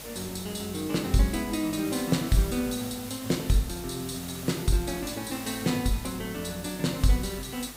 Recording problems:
hum; 50 Hz, harmonics up to 500 Hz, SNR 24 dB
background hiss; slope -1 dB per octave, SNR 12 dB
wind on the microphone; below 720 Hz, SNR 26 dB

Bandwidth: 15.5 kHz